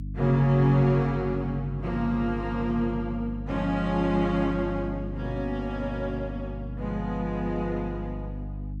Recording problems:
mains hum; 50 Hz, harmonics up to 300 Hz, SNR 9 dB

